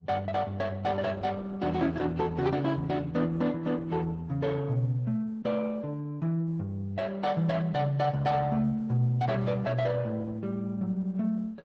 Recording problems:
codec artefacts; AAC, then Opus, log-spectral distance 2 dB, nothing above 7.8 kHz

